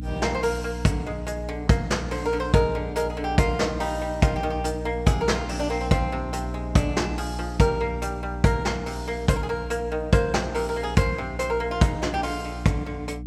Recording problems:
electrical hum; 60 Hz, harmonics up to 300 Hz, SNR 9 dB

